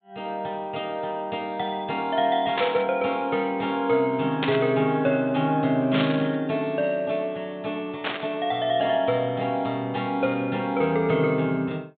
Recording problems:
treble missing; nothing above 4 kHz
static burst; 4 times, first at 2.5 s; peak +2 dB vs average level

